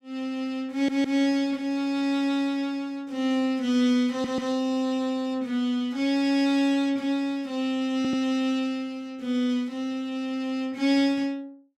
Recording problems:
stutter; at 0.5 s, at 4 s and at 8 s

